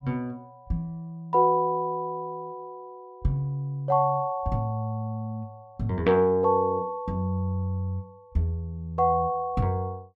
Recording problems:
none

